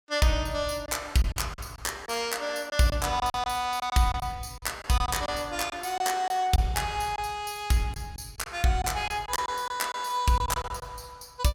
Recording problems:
packet loss; 8% of the sound replaced, filled with silence

